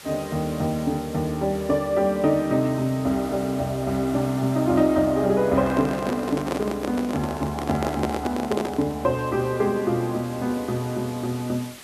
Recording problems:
background hiss; slope 0 dB per octave, SNR 19 dB
microphone handling noise; from 5.5 to 9 s; peak +2 dB vs average level

